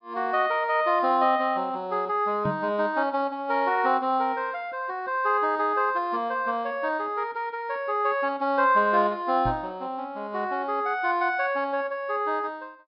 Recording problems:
treble missing; nothing above 5.1 kHz
knock on the microphone; at 2.5 s and at 9.5 s; peak -1 dB vs average level

